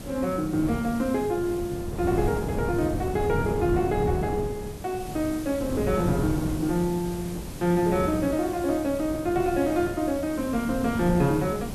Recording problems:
hiss; SNR 17 dB
wind on the microphone; below 310 Hz, SNR 7 dB

